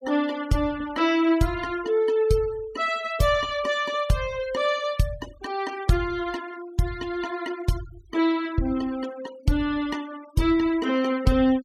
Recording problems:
noise reduction artefacts; signal-to-artefact ratio 21 dB

